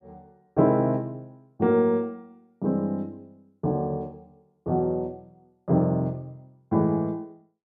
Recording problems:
none

